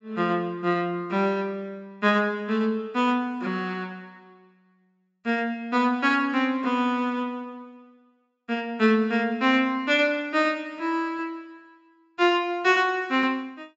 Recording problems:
treble cut off; nothing above 8 kHz

